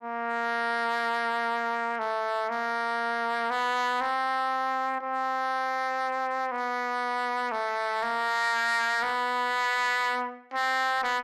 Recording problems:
distortion; hard clipping, signal-to-distortion ratio 11 dB

